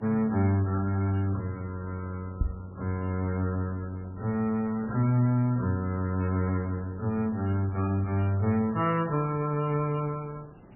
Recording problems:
lossy compression; MP3, log-spectral distance 2 dB, nothing above 2.4 kHz
hiss; SNR 22 dB
knock on the microphone; at 2.5 s; peak +5 dB vs average level

